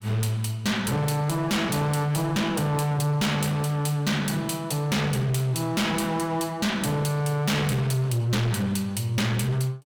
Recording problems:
distorted audio; hard clipping, signal-to-distortion ratio 6 dB

